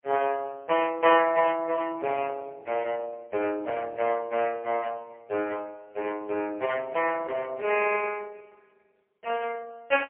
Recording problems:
phone line; 340 Hz to 3.1 kHz, AMR-NB, then MP3

